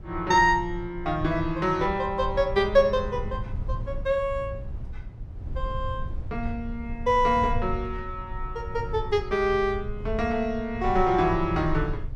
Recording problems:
low-frequency rumble; below 92 Hz, SNR 10 dB

